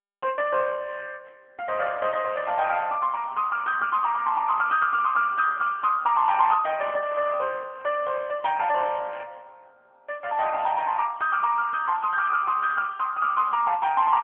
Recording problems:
phone line; 300 Hz to 3.2 kHz, AMR-NB

